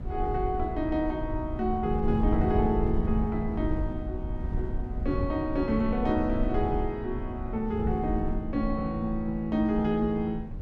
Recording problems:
wind noise; below 94 Hz, SNR 5 dB

